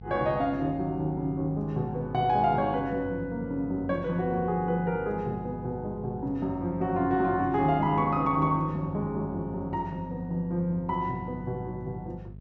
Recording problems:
hum; 50 Hz, harmonics up to 450 Hz, SNR 16 dB

